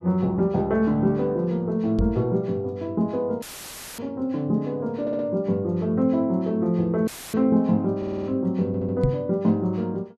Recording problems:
microphone bump; at 2 s and at 9 s; peak +5 dB vs average level
audio cutting out; at 3.5 s for 0.5 s and at 7 s; filled with static
stutter; at 5 s, at 8 s and at 8.5 s

